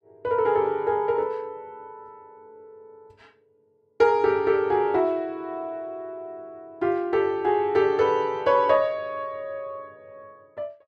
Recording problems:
none

